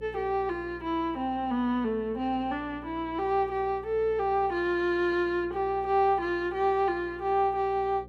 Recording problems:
electrical hum; 60 Hz, harmonics up to 540 Hz, SNR 21 dB

